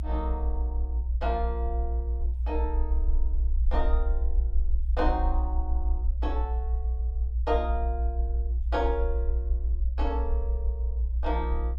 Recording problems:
rumble; below 62 Hz, strongest tone 60 Hz, SNR -5 dB

